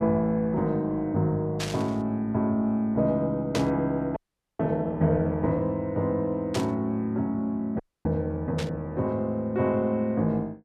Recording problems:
burst of static; 4 times, first at 1.5 s; peak -1 dB vs average level
audio freezing; at 4 s and at 8 s

